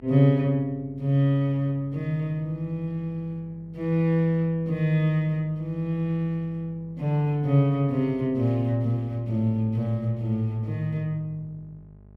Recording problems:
mains hum; 50 Hz, harmonics up to 850 Hz, SNR 25 dB

